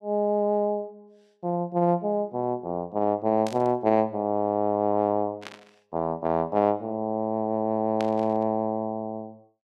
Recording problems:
static burst; at 3.5 s, at 5.5 s and at 8 s; peak -7 dB vs average level

